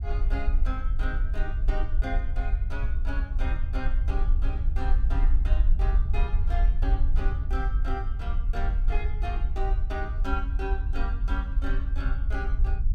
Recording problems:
low-frequency rumble; below 52 Hz, SNR -9 dB

